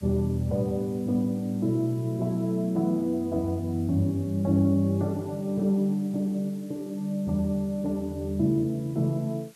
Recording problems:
background hiss; slope 0 dB per octave, SNR 28 dB

